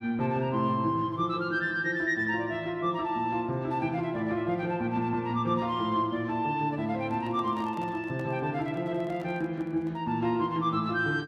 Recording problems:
microphone handling noise; from 7 to 10 s; peak -12 dB vs average level

